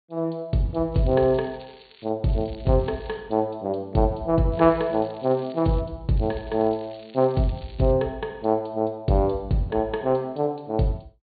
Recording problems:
treble missing; nothing above 4.5 kHz
crackling; 4 times, first at 1 s; loose cable, SNR 27 dB

